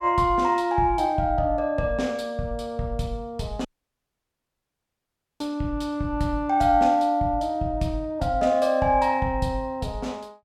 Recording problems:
audio cutting out; at 3.5 s for 2 s

